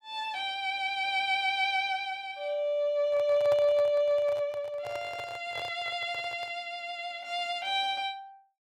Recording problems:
handling noise; from 3 to 6.5 s; peak -5 dB vs average level

